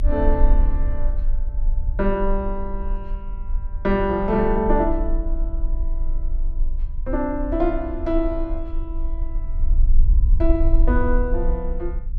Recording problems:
low-frequency rumble; below 44 Hz, strongest tone 24 Hz, SNR 1 dB

